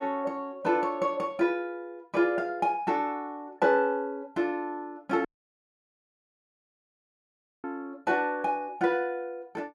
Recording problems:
audio cutting out; at 5.5 s for 2.5 s

